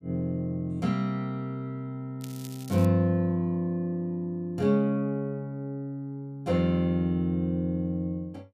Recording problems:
crackle; at 2 s; loose cable, SNR 19 dB

